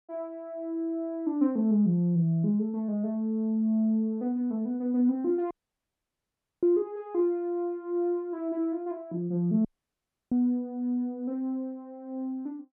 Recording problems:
dropout; at 5.5 s for 1 s and at 9.5 s for 0.5 s

